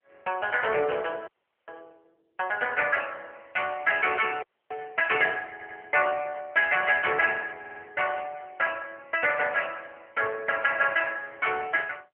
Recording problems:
telephone audio; 340 Hz to 3.3 kHz, AMR-NB
audio freezing; at 1.5 s and at 4.5 s
audio stuttering; at 5.5 s and at 7.5 s

